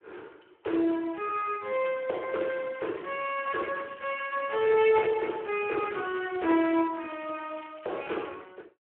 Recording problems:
phone line; 300 Hz to 3.5 kHz, Speex
crackling; from 3 to 5 s and from 5.5 to 8.5 s; loose cable, SNR 21 dB

